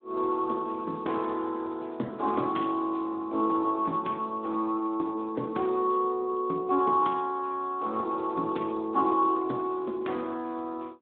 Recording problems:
phone line; 190 Hz to 3.9 kHz, Speex

